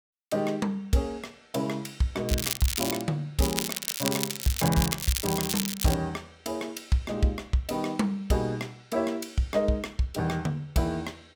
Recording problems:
crackle; at 2.5 s and from 3.5 to 6 s; loose cable, SNR 1 dB

